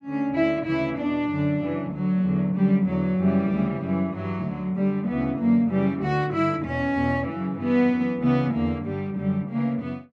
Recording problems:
none

